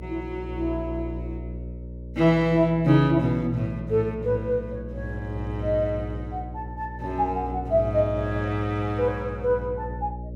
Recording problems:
electrical hum; 60 Hz, harmonics up to 600 Hz, SNR 11 dB

